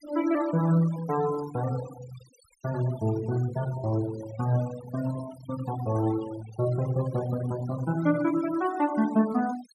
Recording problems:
noise reduction artefacts; signal-to-artefact ratio 17 dB

